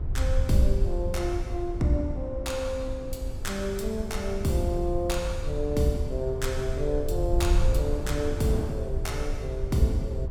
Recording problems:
electrical hum; 50 Hz, harmonics up to 450 Hz, SNR 18 dB
low-frequency rumble; below 72 Hz, SNR 3 dB
wind on the microphone; below 460 Hz, SNR 14 dB

